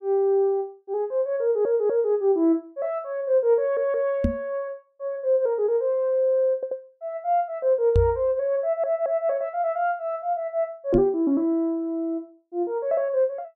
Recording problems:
stutter; 4 times, first at 1.5 s
microphone bump; at 4 s, at 8 s and at 11 s; peak +4 dB vs average level

